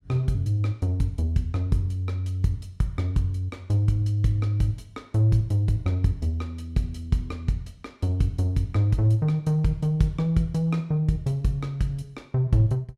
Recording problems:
none

